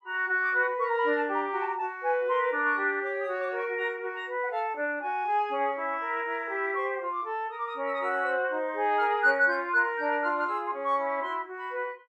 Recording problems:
none

